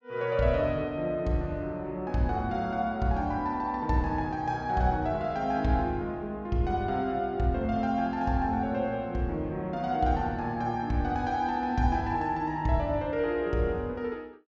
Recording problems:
treble missing; nothing above 8 kHz

